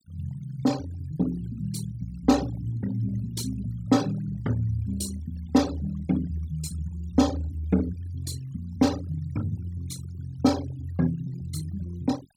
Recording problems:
denoising artefacts; signal-to-artefact ratio 17 dB

